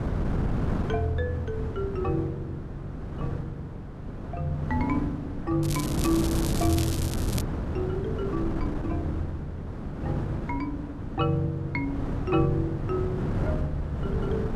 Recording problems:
wind noise; below 290 Hz, SNR 2 dB
crackle; from 5.5 to 7.5 s; loose cable, SNR 5 dB

